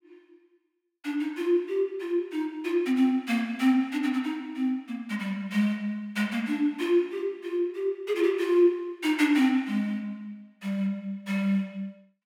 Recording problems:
none

